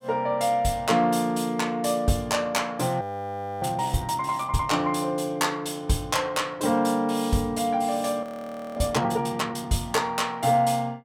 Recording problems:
audio freezing; at 3 s for 0.5 s and at 8 s for 0.5 s

